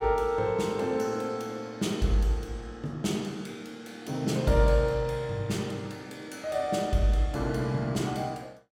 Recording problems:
none

